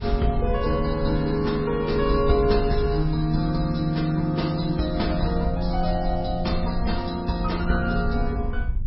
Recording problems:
lossy compression; MP3, log-spectral distance 3 dB, nothing above 5.5 kHz
wind on the microphone; below 70 Hz, SNR 7 dB

